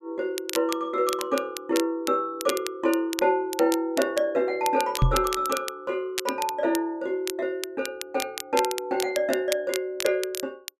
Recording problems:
crackle; vinyl, SNR 9 dB
microphone thump; at 5 s; peak +8 dB vs average level

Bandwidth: 14 kHz